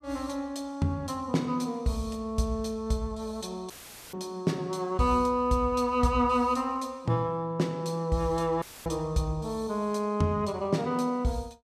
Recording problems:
dropout; at 3.5 s and at 8.5 s; filled with static

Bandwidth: 14 kHz